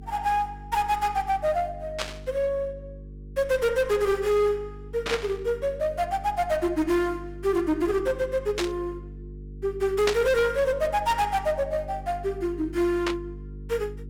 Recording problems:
distorted audio; hard clipping, uneven, signal-to-distortion ratio 9 dB
hum; 50 Hz, harmonics up to 450 Hz, SNR 15 dB
static burst; 5 times, first at 2 s; peak +4 dB vs average level

